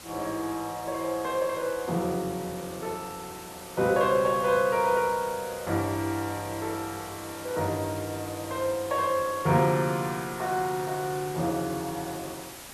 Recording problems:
background hiss; slope -2 dB per octave, SNR 14 dB

